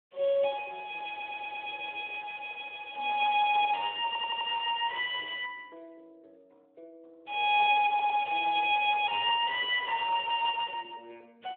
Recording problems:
telephone audio; 410 Hz to 3.4 kHz, Speex
audio stuttering; at 1 s, at 4 s and at 8 s

